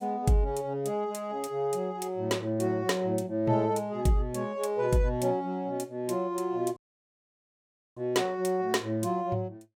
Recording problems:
dropout; at 7 s for 1 s

